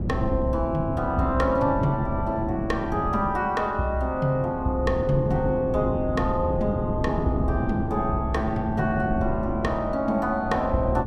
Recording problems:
wind noise; below 240 Hz, SNR 5 dB

